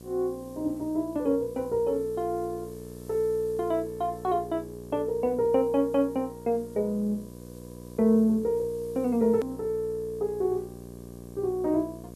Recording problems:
mains hum; 60 Hz, harmonics up to 1.1 kHz, SNR 16 dB
hiss; slope +4 dB per octave, SNR 27 dB
click at an edit; at 9.5 s

